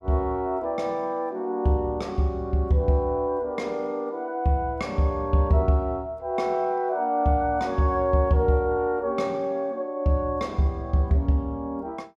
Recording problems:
none

